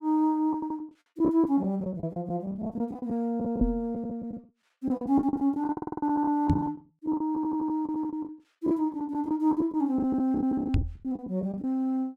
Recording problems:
lost packets; 15% of the sound replaced, filled with the last packet
audio stuttering; at 0.5 s, at 5.5 s and at 7.5 s
microphone bump; at 3.5 s, at 6.5 s and at 11 s; peak +7 dB vs average level

